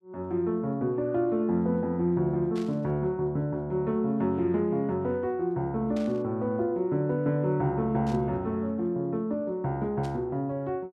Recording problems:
burst of static; 4 times, first at 2.5 s; peak -14 dB vs average level

